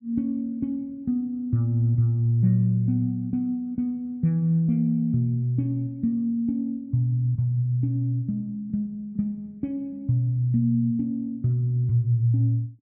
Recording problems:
none

